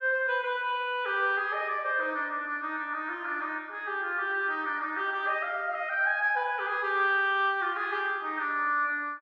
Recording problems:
none

